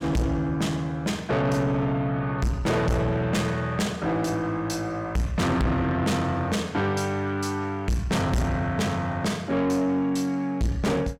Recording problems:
distorted audio; soft clipping, signal-to-distortion ratio 6 dB

